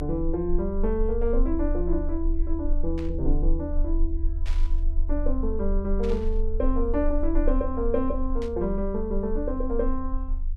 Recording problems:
low-frequency rumble; below 34 Hz, strongest tone 26 Hz, SNR 2 dB
static burst; 4 times, first at 3 s; peak -10 dB vs average level

